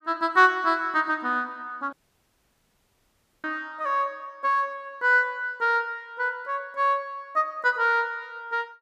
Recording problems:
dropout; at 2 s for 1.5 s

